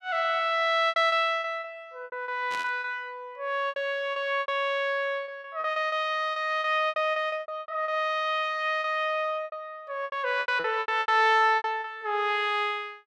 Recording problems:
lost packets; 14% of the sound replaced, filled with repeated pitch periods
burst of static; at 2.5 s; peak -8 dB vs average level

